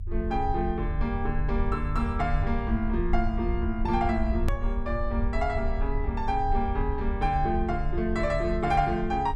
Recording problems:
rumble; below 68 Hz, SNR 3 dB
click at an edit; at 4.5 s

